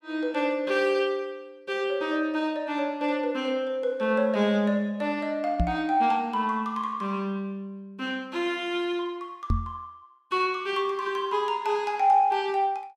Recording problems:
microphone bump; at 5.5 s and at 9.5 s; peak +4 dB vs average level

